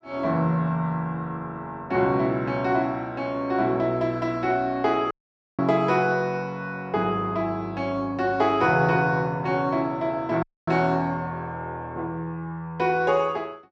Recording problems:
dropout; at 5 s and at 10 s

